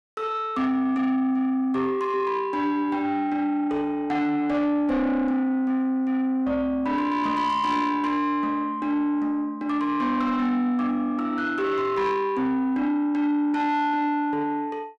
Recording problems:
distortion; soft clipping, signal-to-distortion ratio 12 dB

